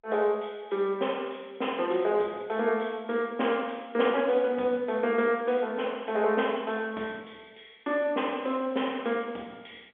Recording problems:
telephone audio; 300 Hz to 3.4 kHz, G.711

